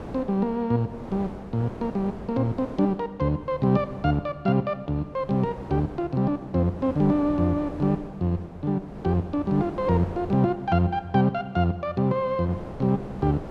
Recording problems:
wind on the microphone; below 610 Hz, SNR 15 dB

